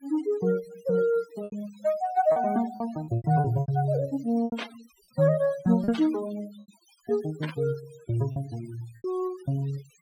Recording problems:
denoising artefacts; signal-to-artefact ratio 18 dB
lost packets; 7% of the sound replaced, filled with repeated pitch periods
static burst; at 4.5 s, at 6 s and at 7.5 s; peak -4 dB vs average level

